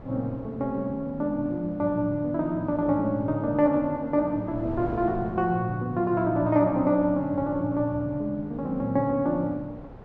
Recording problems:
wind noise; below 510 Hz, SNR 18 dB

